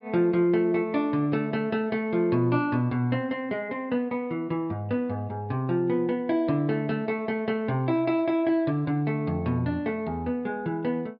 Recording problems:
low-pass filter; nothing above 5.1 kHz

